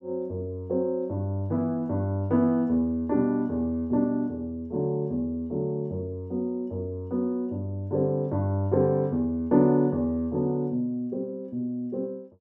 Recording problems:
none

